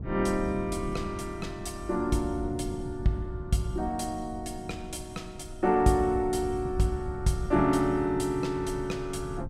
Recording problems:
wind on the microphone; below 150 Hz, SNR 11 dB

